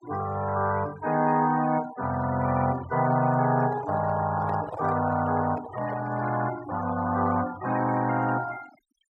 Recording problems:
denoising artefacts; signal-to-artefact ratio 16 dB
handling noise; from 3.5 to 6.5 s; peak -6 dB vs average level

